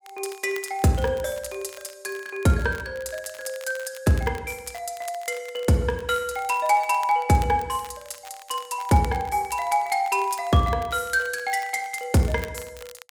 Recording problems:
crackling; vinyl, SNR 21 dB

